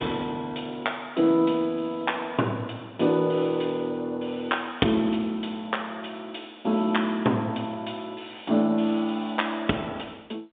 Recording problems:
phone line; 170 Hz to 3.7 kHz, G.711

